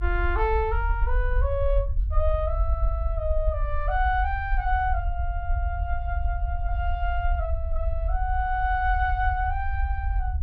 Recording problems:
low-frequency rumble; below 62 Hz, SNR 0 dB

